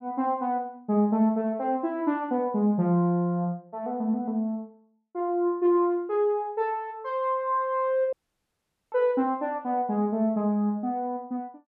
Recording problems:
dropout; at 8 s for 1 s

